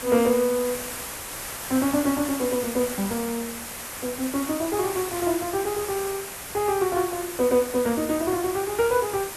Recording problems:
background hiss; SNR 8 dB

